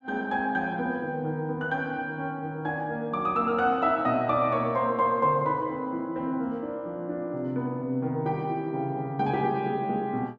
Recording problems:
none

